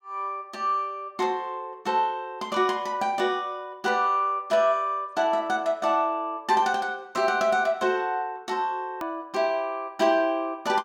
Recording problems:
hard cut with a click; at 9 s

